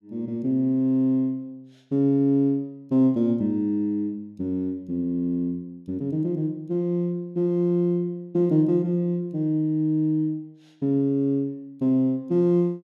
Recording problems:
none

